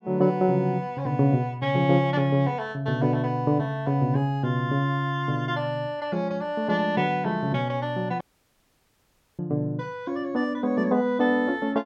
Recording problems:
audio cutting out; at 8 s for 1 s

